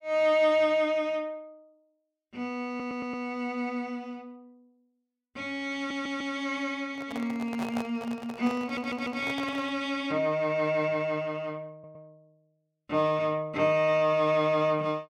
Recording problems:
audio stuttering; 4 times, first at 2.5 s
handling noise; from 7 to 10 s; peak -4 dB vs average level

